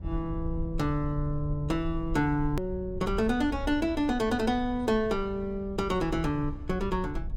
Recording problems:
rumble; below 78 Hz, SNR 10 dB
hard cut with a click; at 2.5 s

